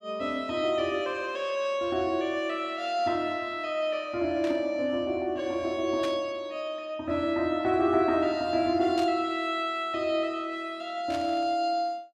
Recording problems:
static burst; 4 times, first at 4.5 s; peak -6 dB vs average level

